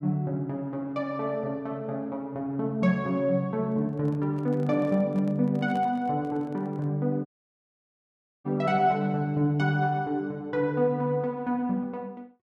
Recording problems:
microphone handling noise; from 3.5 to 7 s; peak -11 dB vs average level
dropout; at 7.5 s for 1 s

